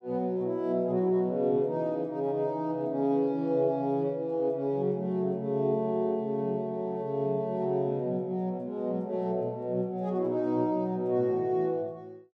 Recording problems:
none

